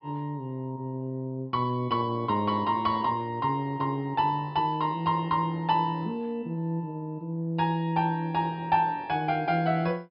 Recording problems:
treble missing; nothing above 5.5 kHz

